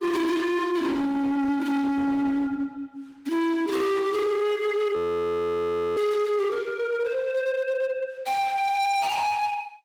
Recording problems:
lossy codec; Opus, log-spectral distance 3 dB
distorted audio; hard clipping, uneven, signal-to-distortion ratio 7 dB
frozen audio; at 5 s for 1 s

